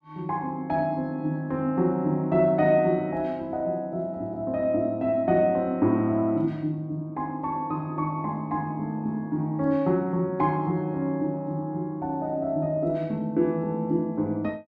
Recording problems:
none

